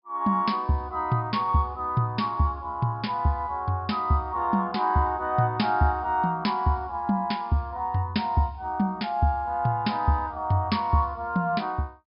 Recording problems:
treble cut off; nothing above 5.5 kHz

